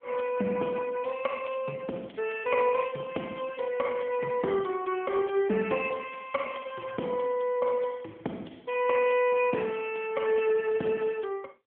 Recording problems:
telephone audio; 220 Hz to 3.7 kHz, AMR-NB

